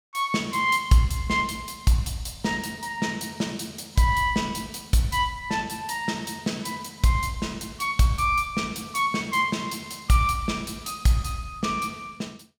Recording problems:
none

